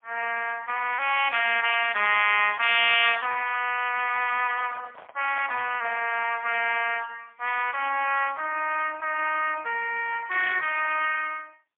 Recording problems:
telephone audio; 410 Hz to 3.3 kHz, AMR-NB, then MP3
handling noise; from 4.5 to 6 s; peak -9 dB vs average level

